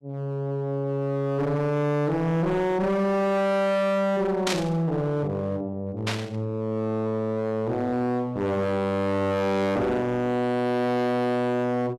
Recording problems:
distortion; hard clipping, uneven, signal-to-distortion ratio 5 dB
burst of static; at 4.5 s and at 6 s; peak +2 dB vs average level

